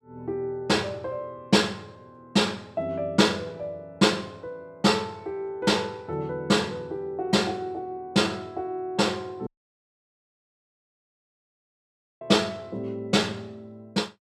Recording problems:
dropout; at 9.5 s for 2.5 s

